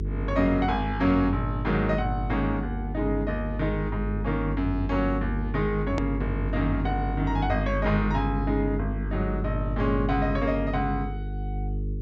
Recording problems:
treble cut off; nothing above 8 kHz
hum; 50 Hz, harmonics up to 450 Hz, SNR 3 dB
click at an edit; at 6 s

